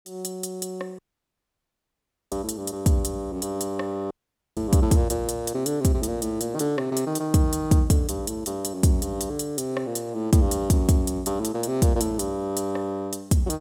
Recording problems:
audio cutting out; at 1 s for 1.5 s and at 4 s

